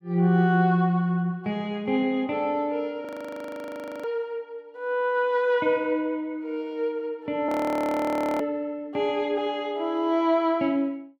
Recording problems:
audio freezing; at 3 s for 1 s and at 7.5 s for 1 s

